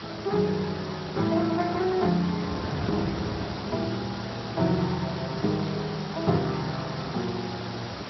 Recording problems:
treble cut off; nothing above 5.7 kHz
codec artefacts; Speex, log-spectral distance 15 dB
hiss; slope -3 dB per octave, SNR 9 dB
wind on the microphone; below 550 Hz, SNR 11 dB

